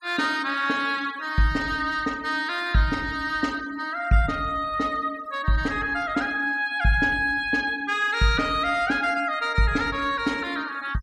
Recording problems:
denoising artefacts; signal-to-artefact ratio 22 dB

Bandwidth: 14.5 kHz